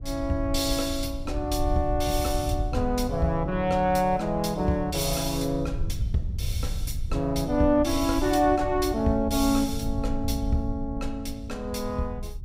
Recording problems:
low-frequency rumble; below 90 Hz, SNR 8 dB

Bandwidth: 15.5 kHz